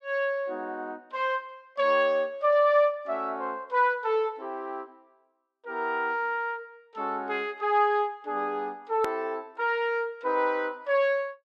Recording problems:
edit click; at 9 s

